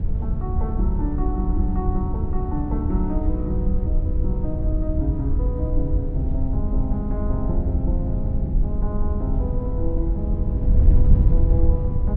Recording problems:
wind noise; below 80 Hz, SNR -6 dB

